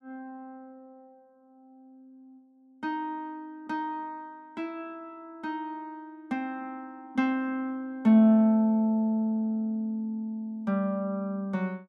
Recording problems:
none

